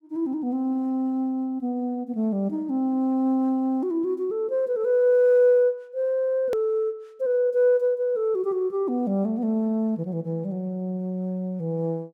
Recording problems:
click at an edit; at 6.5 s

